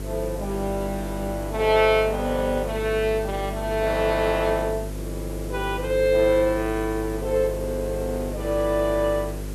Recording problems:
hum; 50 Hz, harmonics up to 550 Hz, SNR 9 dB
hiss; slope -4 dB per octave, SNR 18 dB

